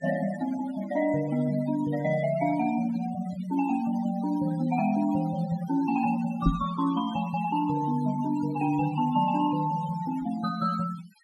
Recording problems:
denoising artefacts; signal-to-artefact ratio 15 dB
knock on the microphone; at 6.5 s; peak +7 dB vs average level

